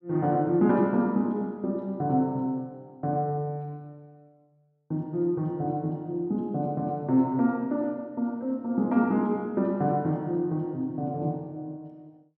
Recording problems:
none

